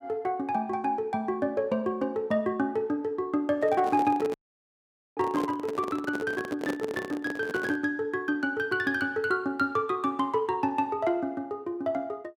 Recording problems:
microphone handling noise; from 3.5 to 8 s; peak 0 dB vs average level
dropout; at 4.5 s for 1 s

